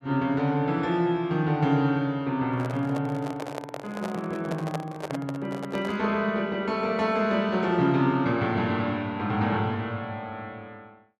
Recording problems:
handling noise; from 2.5 to 6 s; peak -1 dB vs average level

